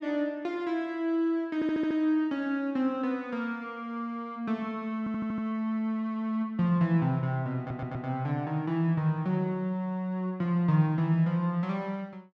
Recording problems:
stutter; at 1.5 s, at 5 s and at 7.5 s

